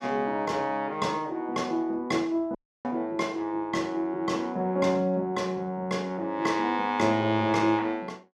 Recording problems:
dropout; at 2.5 s

